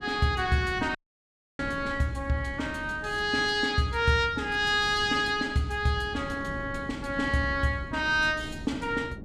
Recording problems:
wind noise; below 270 Hz, SNR 15 dB
audio cutting out; at 1 s for 0.5 s

